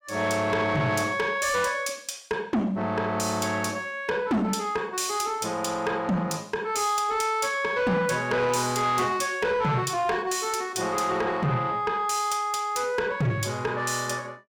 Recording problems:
distortion; soft clipping, signal-to-distortion ratio 10 dB

